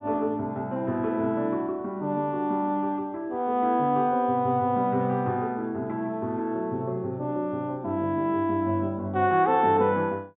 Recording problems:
treble missing; nothing above 4 kHz

